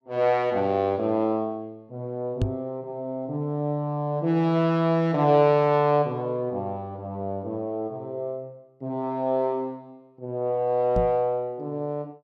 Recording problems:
microphone thump; at 2.5 s and at 11 s; peak +3 dB vs average level

